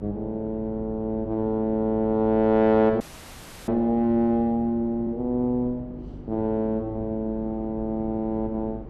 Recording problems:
hum; 50 Hz, harmonics up to 350 Hz, SNR 20 dB
wind on the microphone; below 340 Hz, SNR 18 dB
audio freezing; at 3 s for 0.5 s

